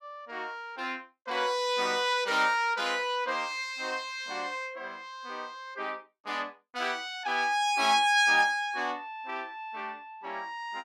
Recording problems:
none

